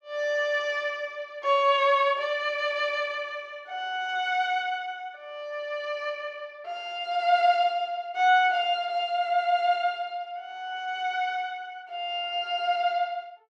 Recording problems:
none

